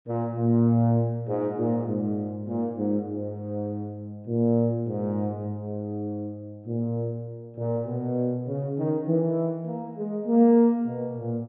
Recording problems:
none

